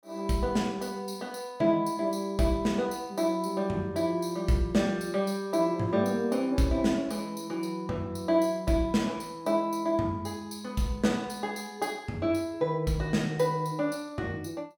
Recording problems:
none

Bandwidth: 17 kHz